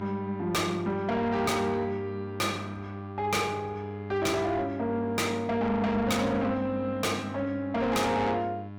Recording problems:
distorted audio; soft clipping, signal-to-distortion ratio 6 dB
hum; 50 Hz, harmonics up to 1.7 kHz, SNR 11 dB

